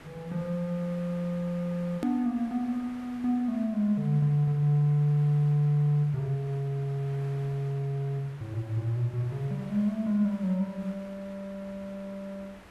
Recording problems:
background hiss; SNR 21 dB
hard cut with a click; at 2 s

